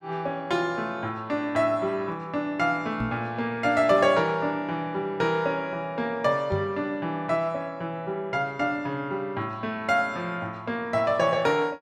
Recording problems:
knock on the microphone; at 3 s and at 6.5 s; peak -1 dB vs average level

